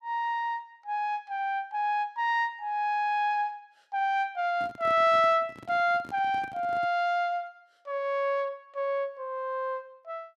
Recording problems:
handling noise; from 4.5 to 7 s; peak -12 dB vs average level

